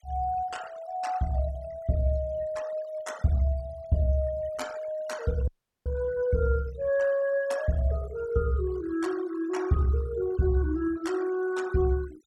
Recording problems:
denoising artefacts; signal-to-artefact ratio 20 dB
audio cutting out; at 5.5 s

